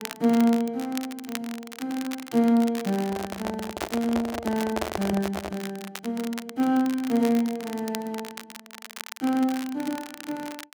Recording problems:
crackle; vinyl, SNR 13 dB
handling noise; from 3 to 5.5 s; peak +2 dB vs average level

